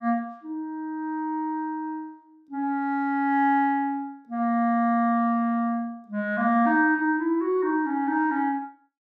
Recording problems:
none

